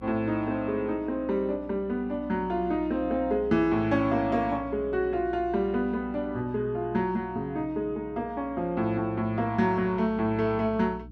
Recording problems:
hum; 60 Hz, harmonics up to 300 Hz, SNR 19 dB

